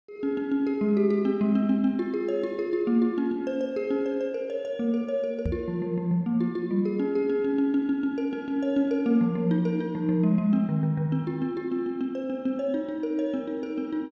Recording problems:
knock on the microphone; at 5.5 s; peak 0 dB vs average level

